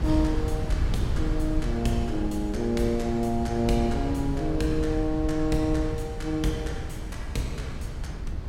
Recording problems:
wind noise; below 100 Hz, SNR 4 dB

